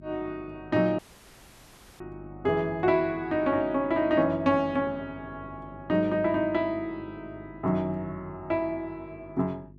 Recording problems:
electrical hum; 50 Hz, harmonics up to 400 Hz, SNR 21 dB
audio cutting out; at 1 s for 1 s

